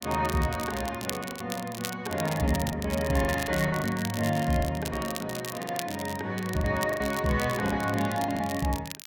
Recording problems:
crackling; vinyl, SNR 11 dB
lost packets; 9% of the sound replaced, filled with the last packet

